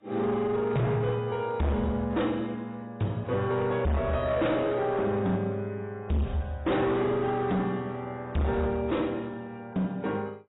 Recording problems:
codec artefacts; AAC, log-spectral distance 2 dB, nothing above 3.8 kHz
distortion; hard clipping, signal-to-distortion ratio 7 dB

